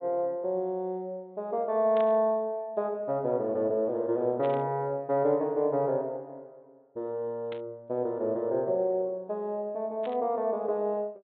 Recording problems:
low-pass filter; nothing above 4 kHz
static burst; 4 times, first at 2 s; peak -11 dB vs average level

